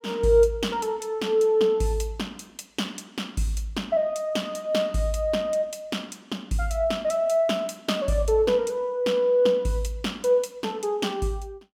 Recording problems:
none

